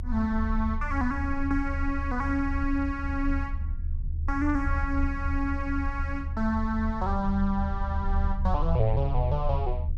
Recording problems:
rumble; below 78 Hz, strongest tone 28 Hz, SNR 2 dB

